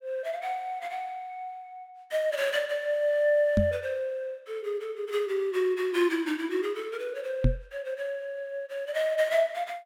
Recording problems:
microphone thump; at 3.5 s and at 7.5 s; peak +8 dB vs average level

